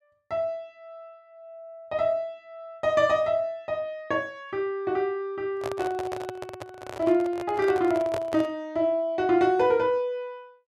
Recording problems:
microphone handling noise; from 5.5 to 8.5 s; peak -3 dB vs average level

